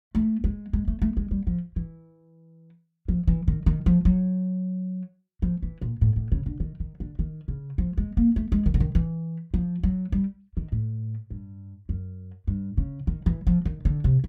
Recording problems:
none

